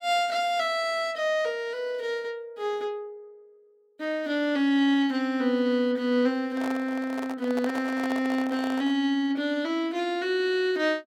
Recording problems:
handling noise; from 6.5 to 9 s; peak -5 dB vs average level

